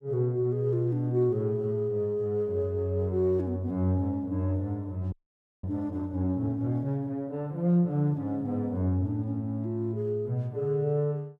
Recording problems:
frozen audio; at 5 s for 0.5 s

